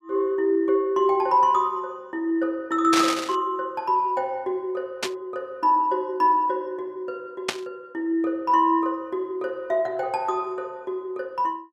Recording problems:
burst of static; at 3 s, at 5 s and at 7.5 s; peak +4 dB vs average level

